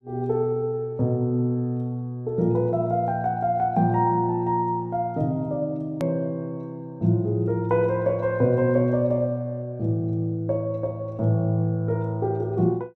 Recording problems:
click at an edit; at 6 s

